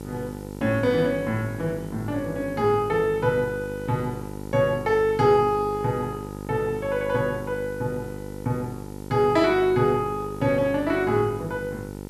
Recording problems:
electrical hum; 50 Hz, harmonics up to 1.4 kHz, SNR 12 dB
hiss; slope +4 dB per octave, SNR 27 dB

